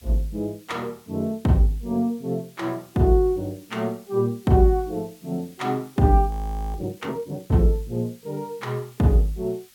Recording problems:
hiss; SNR 27 dB
frozen audio; at 6.5 s

